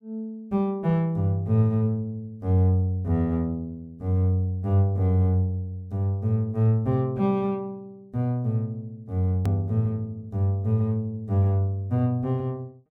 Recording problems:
hard cut with a click; at 9.5 s

